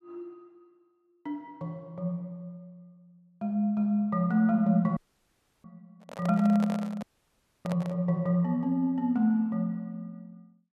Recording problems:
audio cutting out; at 5 s for 0.5 s and at 7 s for 0.5 s
handling noise; from 6 to 8 s; peak -5 dB vs average level

